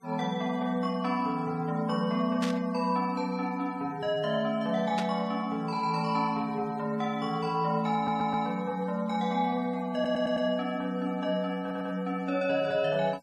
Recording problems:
noise reduction artefacts; signal-to-artefact ratio 25 dB
static burst; at 2.5 s and at 5 s; peak -2 dB vs average level
stutter; at 8 s, at 10 s and at 12 s

